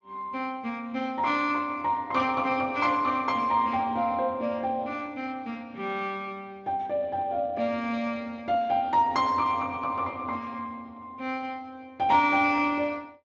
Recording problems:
codec artefacts; Speex, log-spectral distance 2 dB

